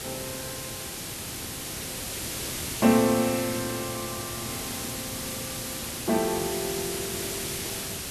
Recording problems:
background hiss; SNR 3 dB

